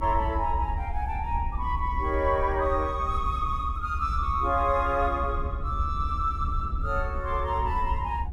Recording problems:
rumble; below 78 Hz, SNR 5 dB

